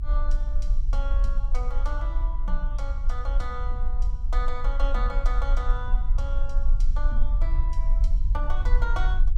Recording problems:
rumble; below 42 Hz, strongest tone 24 Hz, SNR -9 dB

